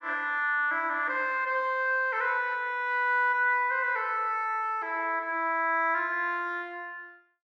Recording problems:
none

